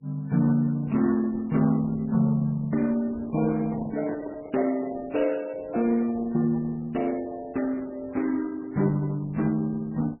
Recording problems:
codec artefacts; Opus, then MP3, log-spectral distance 3 dB, nothing above 2.4 kHz
handling noise; from 3.5 to 5 s; peak -9 dB vs average level

